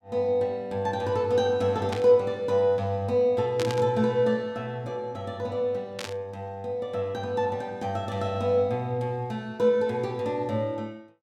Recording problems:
burst of static; at 2 s, at 3.5 s and at 6 s; peak -4 dB vs average level

